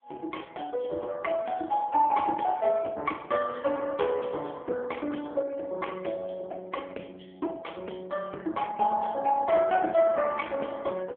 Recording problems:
telephone audio; 260 Hz to 3.3 kHz, AMR-NB

